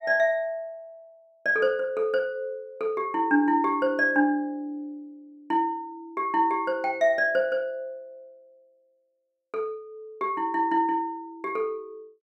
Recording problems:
none

